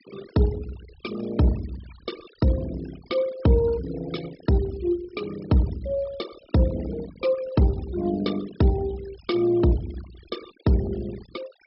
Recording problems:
low-pass filter; nothing above 5.3 kHz
noise reduction artefacts; signal-to-artefact ratio 19 dB

